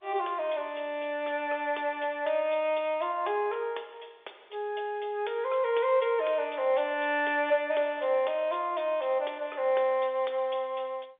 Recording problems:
phone line; 320 Hz to 3.6 kHz, G.711

